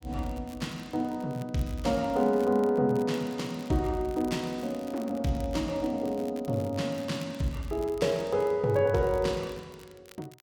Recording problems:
crackle; vinyl, SNR 24 dB

